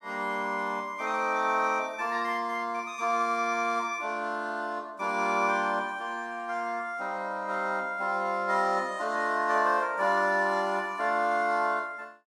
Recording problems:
none

